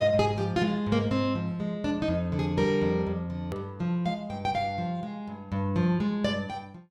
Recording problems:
edit click; at 3.5 s

